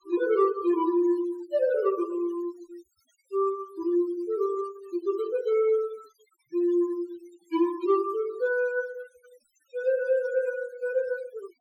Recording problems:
denoising artefacts; signal-to-artefact ratio 24 dB

